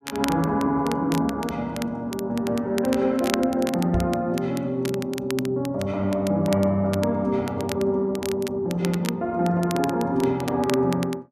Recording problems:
crackle; vinyl, SNR 14 dB
knock on the microphone; at 4 s; peak +1 dB vs average level

